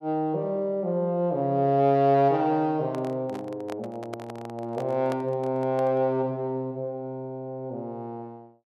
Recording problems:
microphone handling noise; from 2.5 to 6 s; peak -5 dB vs average level

